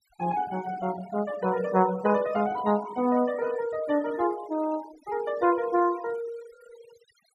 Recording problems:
noise reduction artefacts; signal-to-artefact ratio 18 dB

